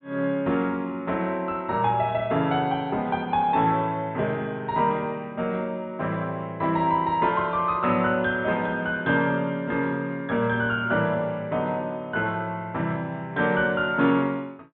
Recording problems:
treble cut off; nothing above 4 kHz

